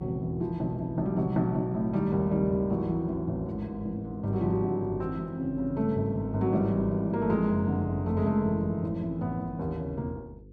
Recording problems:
hum; 50 Hz, harmonics up to 500 Hz, SNR 19 dB

